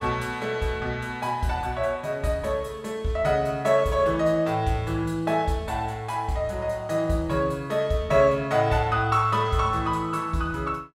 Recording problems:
none

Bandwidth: 16 kHz